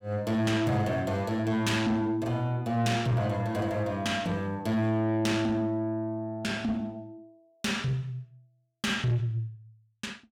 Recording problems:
distorted audio; soft clipping, signal-to-distortion ratio 10 dB

